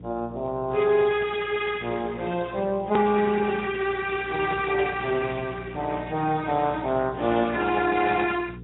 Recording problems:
treble missing; nothing above 3.8 kHz
codec artefacts; Speex, log-spectral distance 4 dB
electrical hum; 60 Hz, harmonics up to 480 Hz, SNR 16 dB
click at an edit; at 3 s

